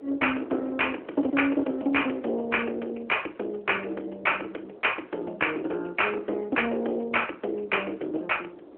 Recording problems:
telephone audio; 260 Hz to 3.1 kHz, AMR-NB
distorted audio; soft clipping, signal-to-distortion ratio 12 dB
wind noise; below 650 Hz, SNR 17 dB

